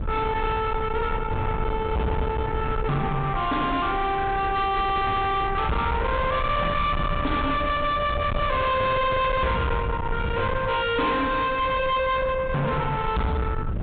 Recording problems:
low-pass filter; nothing above 4 kHz
distortion; soft clipping, signal-to-distortion ratio 6 dB
low-frequency rumble; below 830 Hz, SNR 6 dB

